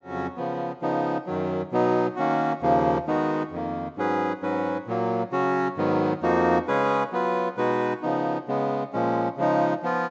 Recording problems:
treble missing; nothing above 8 kHz

